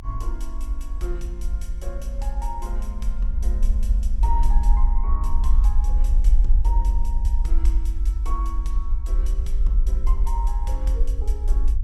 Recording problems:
low-frequency rumble; below 48 Hz, SNR -12 dB

